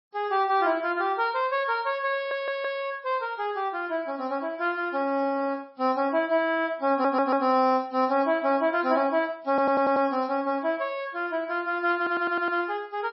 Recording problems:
lossy codec; MP3, log-spectral distance 2 dB, nothing above 5.2 kHz
audio stuttering; 4 times, first at 2 s

